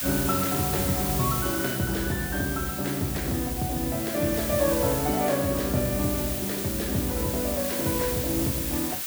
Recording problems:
hiss; slope +2 dB per octave, SNR 2 dB

